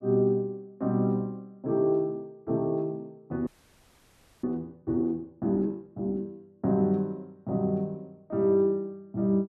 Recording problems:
audio freezing; at 3.5 s for 1 s

